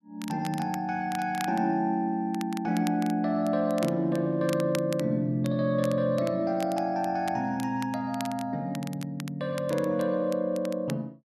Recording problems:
crackling; vinyl, SNR 17 dB

